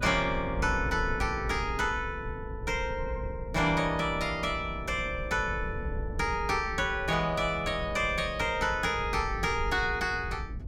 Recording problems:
rumble; below 96 Hz, SNR 9 dB

